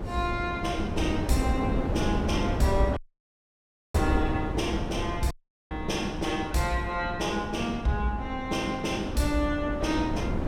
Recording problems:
wind noise; below 340 Hz, SNR 3 dB
audio cutting out; at 3 s for 1 s and at 5.5 s

